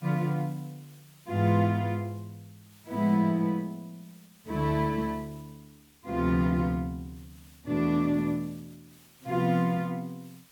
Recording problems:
background hiss; slope 0 dB per octave, SNR 28 dB

